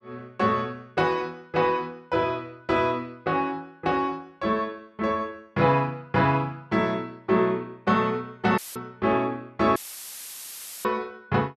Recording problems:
dropout; at 8.5 s and at 10 s for 1 s; filled with static

